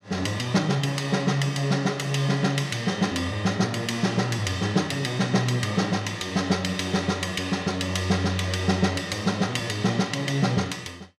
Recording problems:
none

